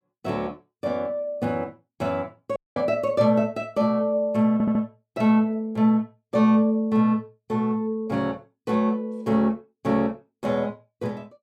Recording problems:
dropout; at 2.5 s
audio stuttering; at 4.5 s

